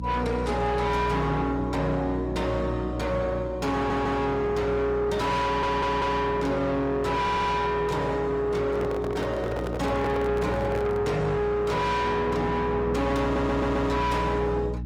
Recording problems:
codec artefacts; Opus, log-spectral distance 2 dB, nothing above 20.1 kHz
distorted audio; soft clipping, signal-to-distortion ratio 5 dB
hum; 60 Hz, harmonics up to 300 Hz, SNR 10 dB
audio stuttering; 4 times, first at 4 s
microphone handling noise; from 8.5 to 11 s; peak +1 dB vs average level

